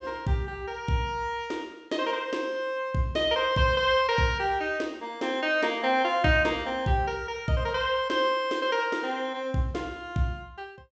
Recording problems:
treble cut off; nothing above 8 kHz

